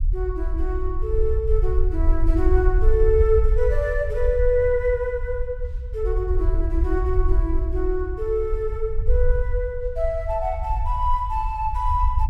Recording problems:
low-frequency rumble; below 58 Hz, SNR 1 dB

